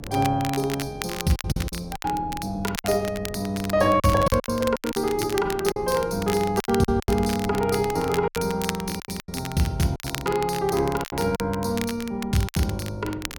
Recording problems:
hum; 60 Hz, harmonics up to 540 Hz, SNR 24 dB
wind noise; below 320 Hz, SNR 18 dB
crackle; vinyl, SNR 11 dB
packet loss; 10% of the sound replaced, filled with silence

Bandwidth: 17 kHz